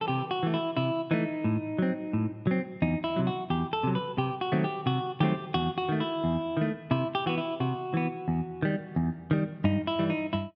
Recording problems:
none

